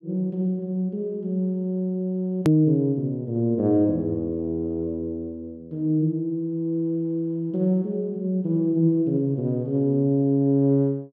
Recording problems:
hard cut with a click; at 2.5 s

